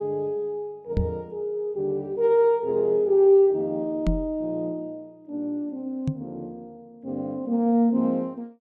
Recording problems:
microphone thump; at 1 s, at 4 s and at 6 s; peak +3 dB vs average level

